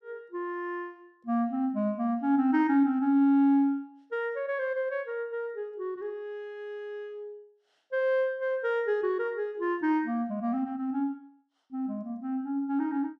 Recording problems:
none

